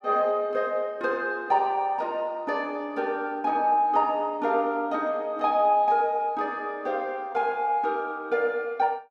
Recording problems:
none

